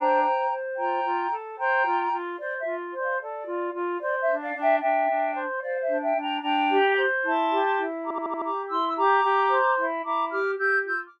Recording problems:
audio stuttering; at 8 s

